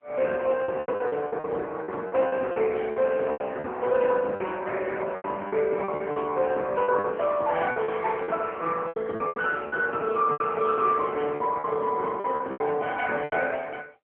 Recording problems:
telephone audio; 300 Hz to 2.2 kHz, AMR-NB
packet loss; 12% of the sound replaced, filled with repeated pitch periods

